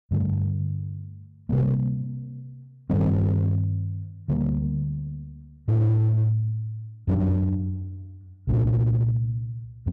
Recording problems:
distorted audio; hard clipping, signal-to-distortion ratio 12 dB

